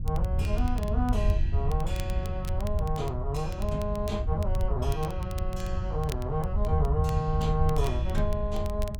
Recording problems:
wind on the microphone; below 86 Hz, SNR -1 dB
crackling; vinyl, SNR 18 dB

